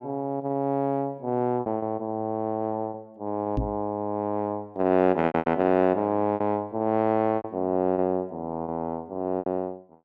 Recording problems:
packet loss; 7% of the sound replaced, filled with repeated pitch periods
knock on the microphone; at 3.5 s; peak +2 dB vs average level

